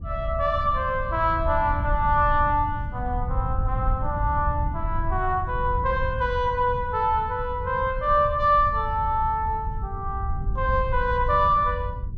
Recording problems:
wind on the microphone; below 92 Hz, SNR 7 dB

